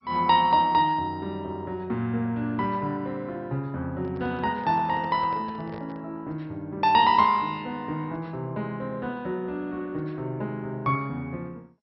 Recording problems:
codec artefacts; MP2, log-spectral distance 2 dB, nothing above 4.8 kHz
handling noise; from 4 to 6 s; peak -11 dB vs average level

